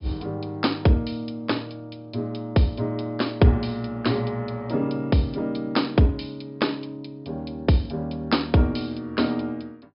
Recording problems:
treble cut off; nothing above 5.5 kHz

